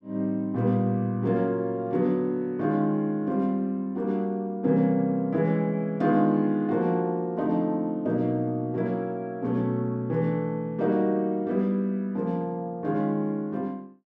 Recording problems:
none

